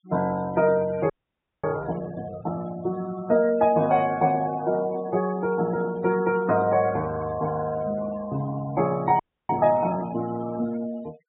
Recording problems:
low-pass filter; nothing above 4 kHz
noise reduction artefacts; signal-to-artefact ratio 18 dB
frozen audio; at 1 s for 0.5 s and at 9 s

